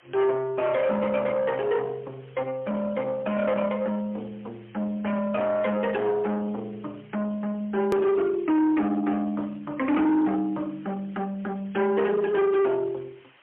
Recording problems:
telephone audio; 240 Hz to 3.3 kHz, AMR-NB, then MP3
distortion; soft clipping, signal-to-distortion ratio 8 dB
hiss; SNR 29 dB
click at an edit; at 8 s

